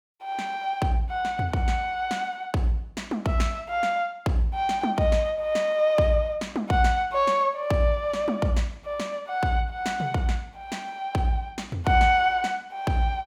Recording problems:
none

